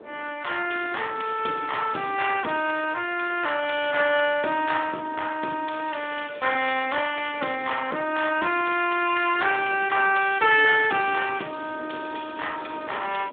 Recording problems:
phone line; 240 Hz to 3.6 kHz, Speex
wind noise; below 610 Hz, SNR 21 dB

